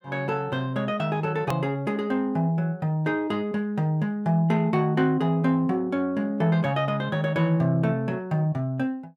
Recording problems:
edit click; at 1.5 s

